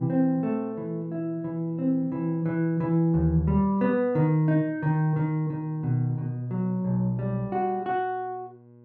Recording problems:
electrical hum; 60 Hz, harmonics up to 1.1 kHz, SNR 25 dB

